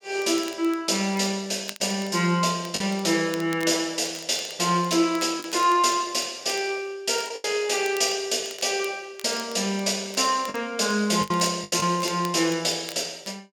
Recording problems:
crackle; vinyl, SNR 20 dB
packet loss; 4% of the sound replaced, filled with the last packet

